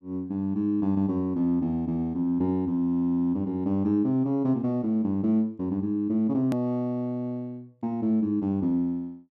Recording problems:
hard cut with a click; at 6.5 s

